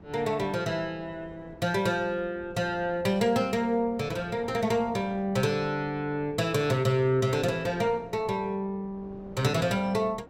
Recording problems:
wind on the microphone; below 500 Hz, SNR 22 dB

